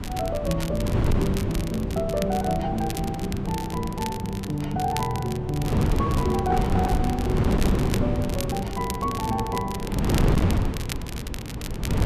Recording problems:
distorted audio; hard clipping, signal-to-distortion ratio 11 dB
hum; 50 Hz, harmonics up to 400 Hz, SNR 19 dB
wind noise; below 270 Hz, SNR 0 dB
crackle; vinyl, SNR 11 dB

